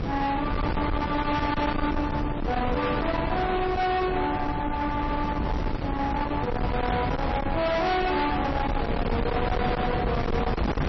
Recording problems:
lossy compression; MP3, log-spectral distance 2 dB, nothing above 5.7 kHz
distortion; soft clipping, signal-to-distortion ratio 6 dB
wind noise; below 750 Hz, SNR 2 dB

